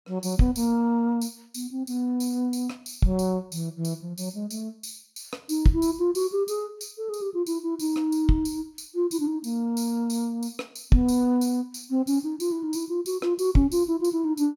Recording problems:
none

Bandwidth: 17.5 kHz